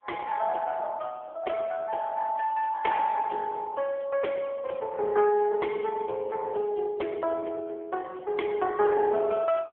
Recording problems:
telephone audio; 320 Hz to 2.1 kHz, AMR-NB

